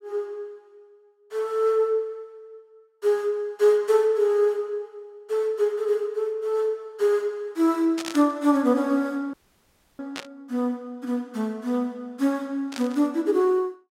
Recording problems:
static burst; at 8 s, at 10 s and at 13 s; peak -4 dB vs average level
audio cutting out; at 9.5 s for 0.5 s

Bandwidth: 16 kHz